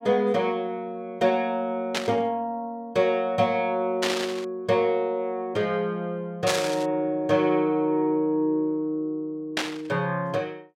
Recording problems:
static burst; 4 times, first at 2 s; peak +4 dB vs average level

